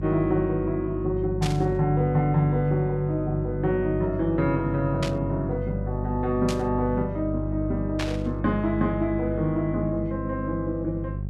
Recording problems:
hum; 50 Hz, harmonics up to 400 Hz, SNR 6 dB
static burst; 4 times, first at 1.5 s; peak -2 dB vs average level

